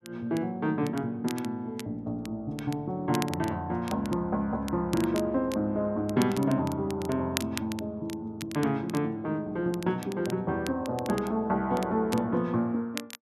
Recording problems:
crackle; vinyl, SNR 14 dB

